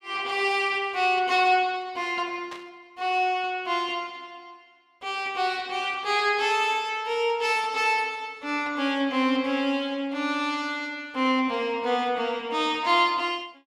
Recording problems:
burst of static; at 2.5 s; peak -11 dB vs average level

